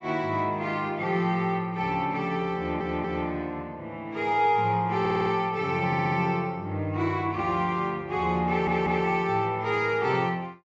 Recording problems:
treble missing; nothing above 7.9 kHz
audio stuttering; 4 times, first at 2.5 s

